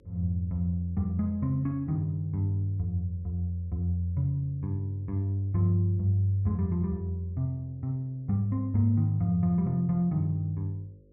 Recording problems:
mains hum; 50 Hz, harmonics up to 550 Hz, SNR 30 dB

